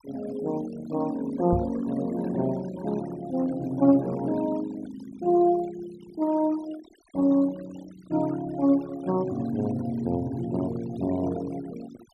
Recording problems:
denoising artefacts; signal-to-artefact ratio 19 dB
microphone bump; at 1.5 s; peak +1 dB vs average level

